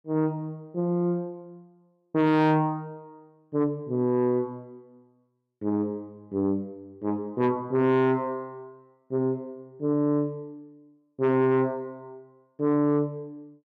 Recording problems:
distorted audio; soft clipping, signal-to-distortion ratio 11 dB

